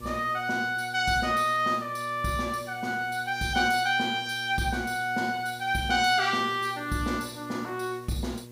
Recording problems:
electrical hum; 60 Hz, harmonics up to 1.1 kHz, SNR 19 dB
hiss; slope -1 dB per octave, SNR 27 dB

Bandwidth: 15.5 kHz